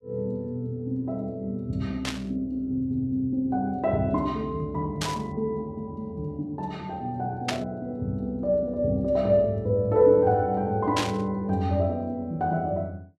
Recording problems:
burst of static; 4 times, first at 2 s; peak +3 dB vs average level

